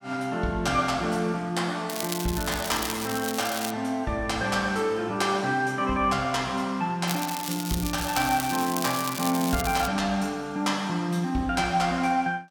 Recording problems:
crackle; from 2 to 3.5 s and from 7 to 10 s; loose cable, SNR 7 dB

